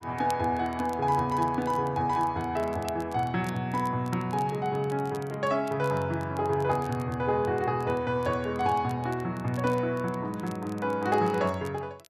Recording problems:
crackle; vinyl, SNR 24 dB

